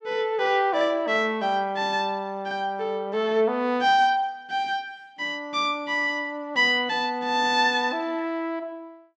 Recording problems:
none

